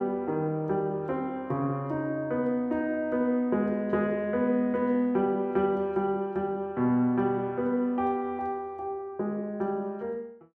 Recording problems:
none

